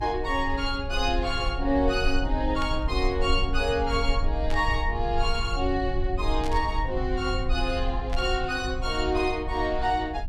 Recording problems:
low-frequency rumble; below 58 Hz, strongest tone 22 Hz, SNR 5 dB
static burst; 4 times, first at 2.5 s; peak -7 dB vs average level

